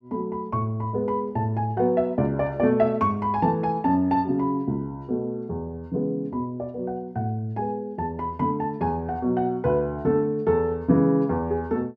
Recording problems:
none

